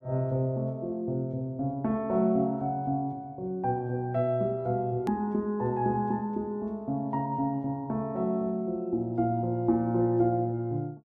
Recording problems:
click at an edit; at 5 s

